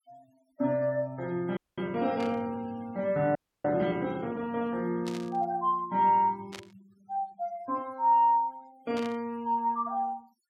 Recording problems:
denoising artefacts; signal-to-artefact ratio 26 dB
audio freezing; at 1.5 s and at 3.5 s
burst of static; 4 times, first at 2 s; peak -8 dB vs average level

